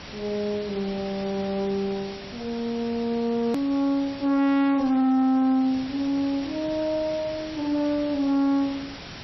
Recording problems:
lossy compression; MP3, log-spectral distance 9 dB, nothing above 13.1 kHz
distortion; soft clipping, signal-to-distortion ratio 10 dB
background hiss; slope -2 dB per octave, SNR 14 dB
click at an edit; at 3.5 s

